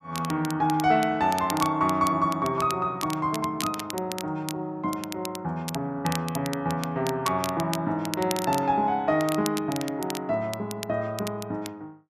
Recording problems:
crackle; vinyl, SNR 11 dB

